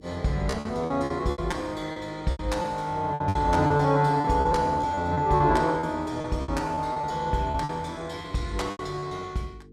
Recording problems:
electrical hum; 50 Hz, harmonics up to 450 Hz, SNR 24 dB
packet loss; 13% of the sound replaced, filled with repeated pitch periods

